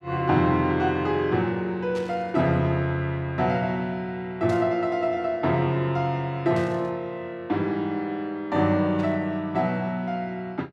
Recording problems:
static burst; 4 times, first at 2 s; peak -12 dB vs average level

